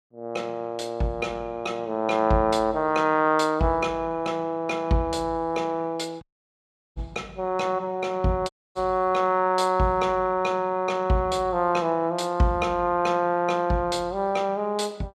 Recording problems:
dropout; at 6 s for 0.5 s and at 8.5 s

